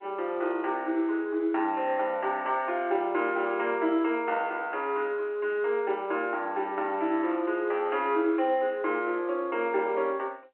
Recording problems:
phone line; 280 Hz to 3.2 kHz, G.711

